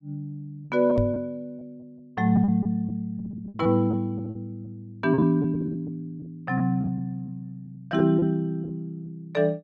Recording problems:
lost packets; 9% of the sound replaced, filled with repeated pitch periods
knock on the microphone; at 1 s; peak +2 dB vs average level

